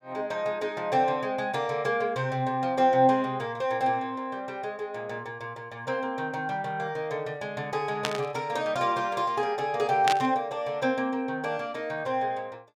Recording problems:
burst of static; at 8 s and at 10 s; peak +4 dB vs average level

